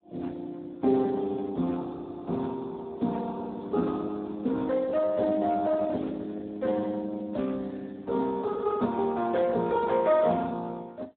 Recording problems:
phone line; 190 Hz to 2.1 kHz, Speex

